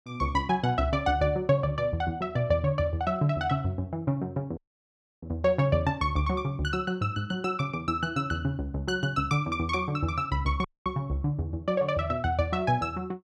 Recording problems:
audio cutting out; at 4.5 s for 0.5 s and at 11 s

